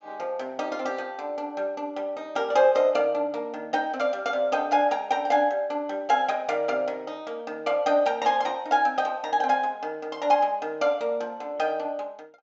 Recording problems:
treble missing; nothing above 8 kHz

